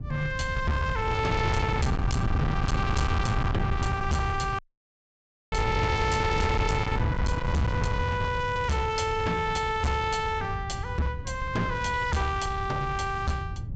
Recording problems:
treble missing; nothing above 8 kHz
distorted audio; hard clipping, signal-to-distortion ratio 7 dB
wind noise; below 170 Hz, SNR 3 dB
dropout; at 4.5 s for 1 s

